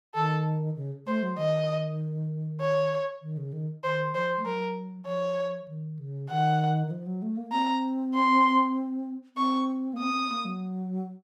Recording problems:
none

